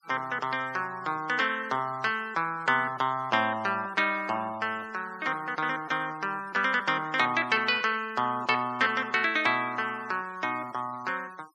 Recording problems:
noise reduction artefacts; signal-to-artefact ratio 23 dB

